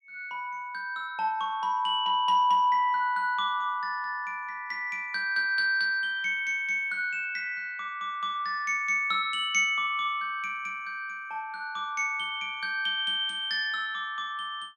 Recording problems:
none

